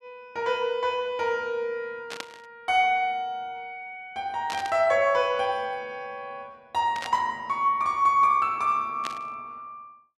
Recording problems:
burst of static; 4 times, first at 2 s; peak -4 dB vs average level

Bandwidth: 13.5 kHz